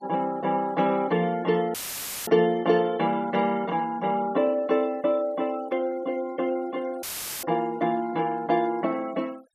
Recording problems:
noise reduction artefacts; signal-to-artefact ratio 25 dB
dropout; at 1.5 s for 0.5 s and at 7 s; filled with static

